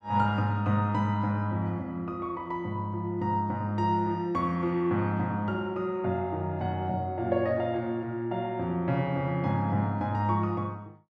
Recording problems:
none

